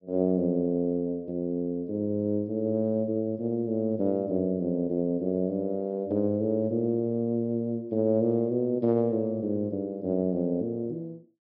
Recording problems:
treble cut off; nothing above 5.5 kHz

